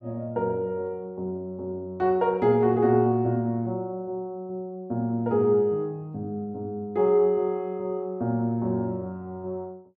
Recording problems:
none

